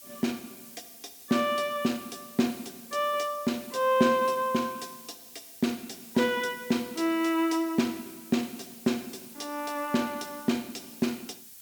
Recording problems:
background hiss; SNR 17 dB

